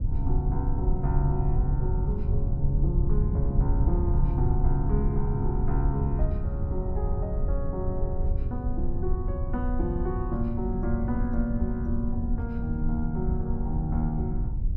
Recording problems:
low-frequency rumble; below 82 Hz, SNR -2 dB

